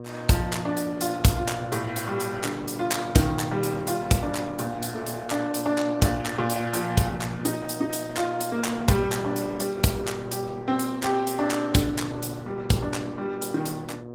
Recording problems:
lossy codec; Opus, log-spectral distance 5 dB, nothing above 15.5 kHz
electrical hum; 60 Hz, harmonics up to 1.2 kHz, SNR 13 dB

